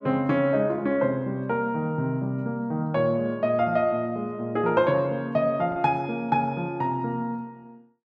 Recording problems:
packet loss; 0.5% of the sound replaced, filled with the last packet

